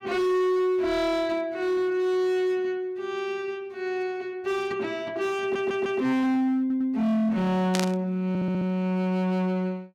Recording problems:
distortion; hard clipping, signal-to-distortion ratio 10 dB
audio stuttering; at 5.5 s, at 6.5 s and at 8.5 s
static burst; at 7.5 s; peak +1 dB vs average level

